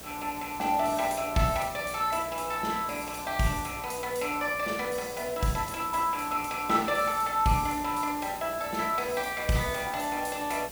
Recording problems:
hum; 60 Hz, harmonics up to 720 Hz, SNR 21 dB
hiss; slope -2 dB per octave, SNR 13 dB

